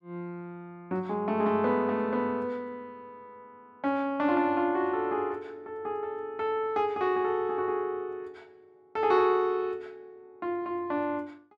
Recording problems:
none

